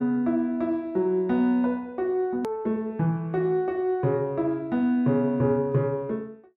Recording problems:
click at an edit; at 2.5 s

